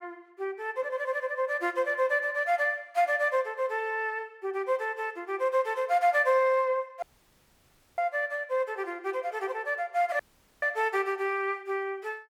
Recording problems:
dropout; at 7 s for 1 s and at 10 s

